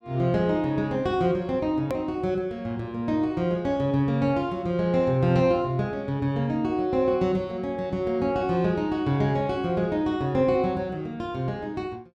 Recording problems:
click at an edit; at 2 s

